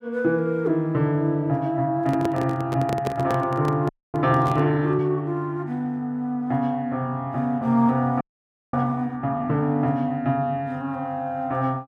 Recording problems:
handling noise; from 2 to 4.5 s; peak 0 dB vs average level
audio freezing; at 4 s and at 8 s for 0.5 s

